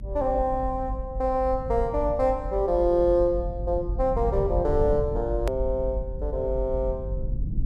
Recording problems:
rumble; below 74 Hz, SNR 7 dB
click at an edit; at 5.5 s

